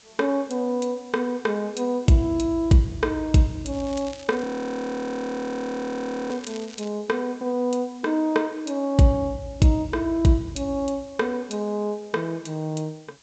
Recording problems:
treble missing; nothing above 8 kHz
hiss; slope 0 dB per octave, SNR 27 dB
crackling; from 3.5 to 7 s; loose cable, SNR 20 dB
audio freezing; at 4.5 s for 2 s

